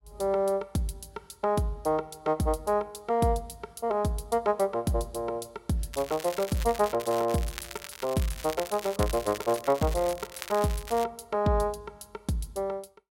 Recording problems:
crackle; from 6 to 11 s; loose cable, SNR 12 dB

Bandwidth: 16 kHz